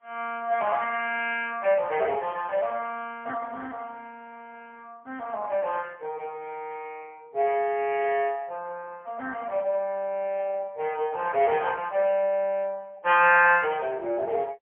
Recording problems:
telephone audio; 280 Hz to 3.1 kHz, AMR-NB, then MP3

